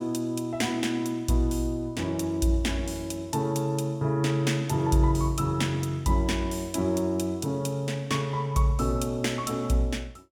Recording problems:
none

